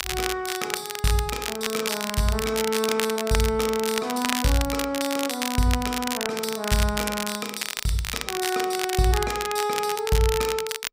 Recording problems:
crackle; vinyl, SNR 4 dB

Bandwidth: 15.5 kHz